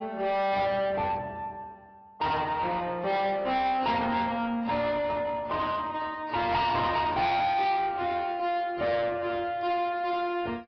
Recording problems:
treble missing; nothing above 5.2 kHz
lossy compression; AAC, then AAC, log-spectral distance 2 dB
distorted audio; soft clipping, signal-to-distortion ratio 8 dB

